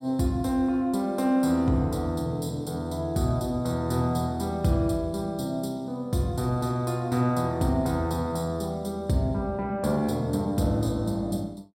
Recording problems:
none

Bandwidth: 16 kHz